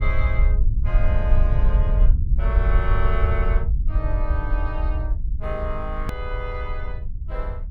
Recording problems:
low-frequency rumble; below 62 Hz, SNR -8 dB
click at an edit; at 6 s

